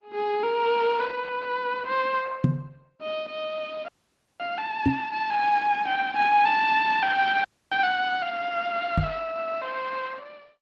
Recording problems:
lossy codec; Opus, log-spectral distance 4 dB
knock on the microphone; at 2.5 s, at 5 s and at 9 s; peak +8 dB vs average level
frozen audio; at 4 s for 0.5 s and at 7.5 s

